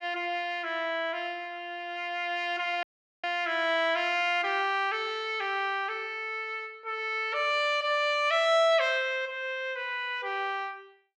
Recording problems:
audio cutting out; at 3 s

